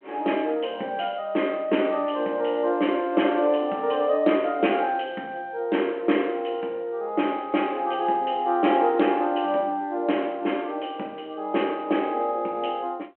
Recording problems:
telephone audio; 240 Hz to 3.2 kHz, G.726

